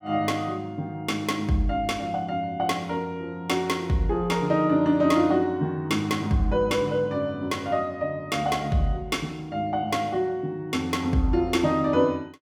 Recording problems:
none

